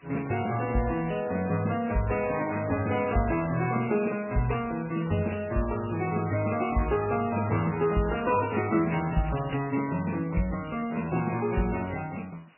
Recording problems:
codec artefacts; MP3, log-spectral distance 9 dB, nothing above 2.7 kHz
hiss; SNR 30 dB
crackle; from 8 to 10 s; loose cable, SNR 18 dB

